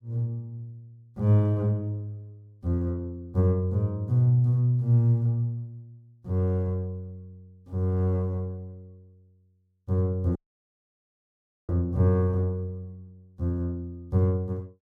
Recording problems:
dropout; at 10 s for 1.5 s

